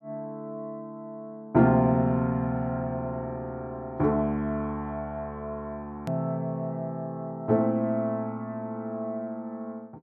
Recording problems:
click at an edit; at 6 s

